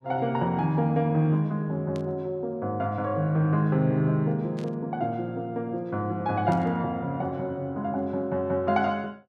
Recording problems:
static burst; at 2 s, at 4.5 s and at 6.5 s; peak -15 dB vs average level

